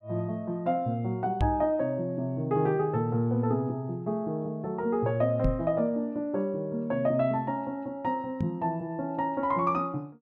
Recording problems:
microphone bump; at 1.5 s, at 5.5 s and at 8.5 s; peak +4 dB vs average level

